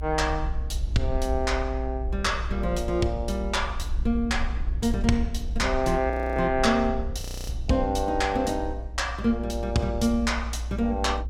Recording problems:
low-frequency rumble; below 60 Hz, strongest tone 58 Hz, SNR 6 dB
audio freezing; at 6 s and at 7 s

